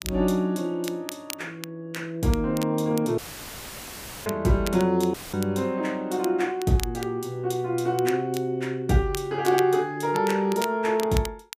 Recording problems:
crackling; vinyl, SNR 15 dB
audio cutting out; at 3 s for 1 s and at 5 s; filled with static

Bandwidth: 15 kHz